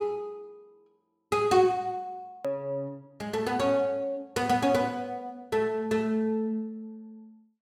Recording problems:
hard cut with a click; at 2.5 s

